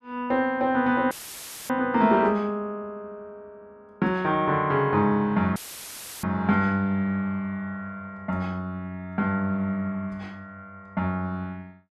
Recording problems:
dropout; at 1 s for 0.5 s and at 5.5 s for 0.5 s; filled with static

